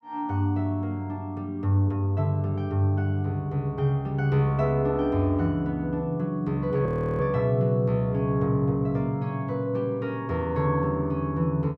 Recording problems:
audio freezing; at 7 s

